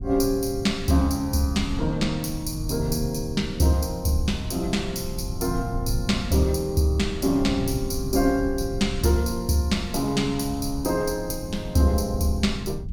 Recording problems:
low-frequency rumble; below 110 Hz, SNR 10 dB

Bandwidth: 18 kHz